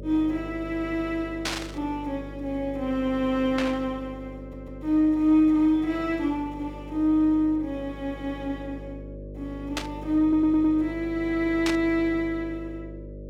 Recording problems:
hum; 50 Hz, harmonics up to 600 Hz, SNR 15 dB
burst of static; 4 times, first at 1.5 s; peak +1 dB vs average level
stutter; at 4.5 s and at 10 s

